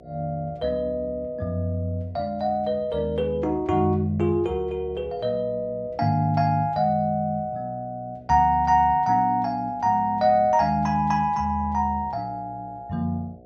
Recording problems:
electrical hum; 60 Hz, harmonics up to 720 Hz, SNR 26 dB

